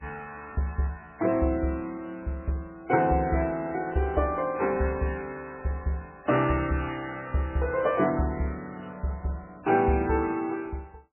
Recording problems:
codec artefacts; MP3, log-spectral distance 3 dB, nothing above 2.7 kHz

